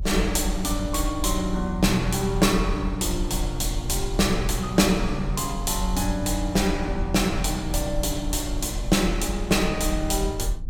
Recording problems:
rumble; below 52 Hz, strongest tone 40 Hz, SNR 7 dB

